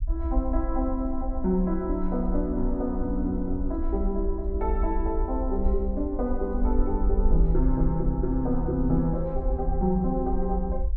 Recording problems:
low-frequency rumble; below 54 Hz, SNR 3 dB

